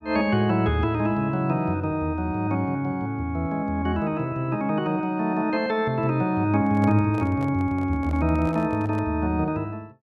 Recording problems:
microphone handling noise; from 6.5 to 9 s; peak -7 dB vs average level

